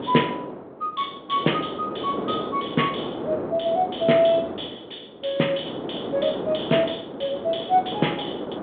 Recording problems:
phone line; 190 Hz to 3.5 kHz, G.726
wind on the microphone; below 630 Hz, SNR 7 dB

